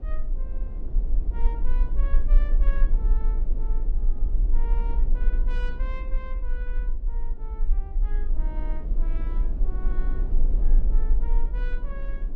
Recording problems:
low-frequency rumble; below 36 Hz, strongest tone 20 Hz, SNR -17 dB
wind on the microphone; below 310 Hz, SNR -2 dB

